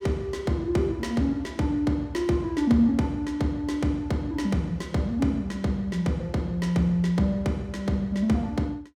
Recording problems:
none

